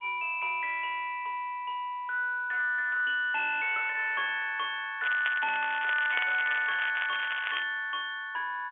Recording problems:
telephone audio; 150 Hz to 3.8 kHz, G.711
distortion; soft clipping, signal-to-distortion ratio 11 dB
crackling; from 5 to 7.5 s; loose cable, SNR 8 dB

